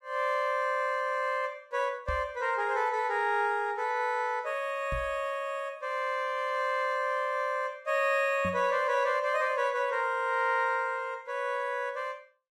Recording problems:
knock on the microphone; at 2 s, at 5 s and at 8.5 s; peak -4 dB vs average level

